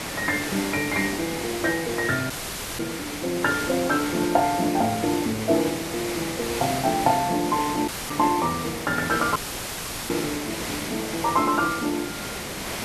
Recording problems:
lossy codec; Opus, log-spectral distance 2 dB
background hiss; slope -3 dB per octave, SNR 6 dB
wind on the microphone; below 770 Hz, SNR 22 dB
audio cutting out; at 2.5 s, at 8 s and at 9.5 s for 0.5 s; filled with static

